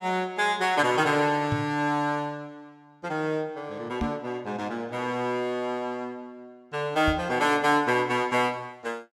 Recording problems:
microphone bump; at 1.5 s, at 4 s and at 7 s; peak +1 dB vs average level

